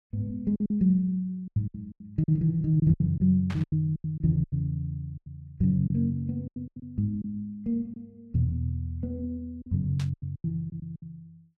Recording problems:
lost packets; 12% of the sound replaced, filled with silence
static burst; at 3.5 s and at 10 s; peak -9 dB vs average level

